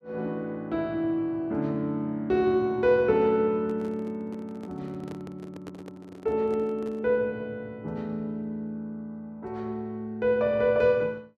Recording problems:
handling noise; from 3.5 to 7 s; peak -9 dB vs average level

